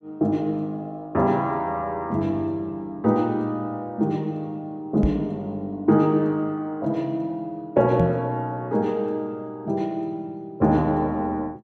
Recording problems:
microphone thump; at 5 s and at 8 s; peak +5 dB vs average level

